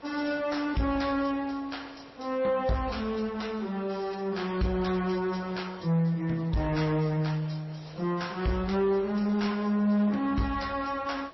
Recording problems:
lossy codec; MP3, then MP3, log-spectral distance 4 dB, nothing above 5.7 kHz
distortion; soft clipping, signal-to-distortion ratio 11 dB
hiss; SNR 21 dB

